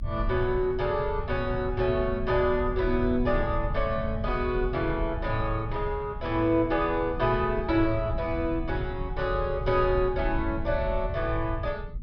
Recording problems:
treble missing; nothing above 5.5 kHz
rumble; below 92 Hz, SNR 8 dB

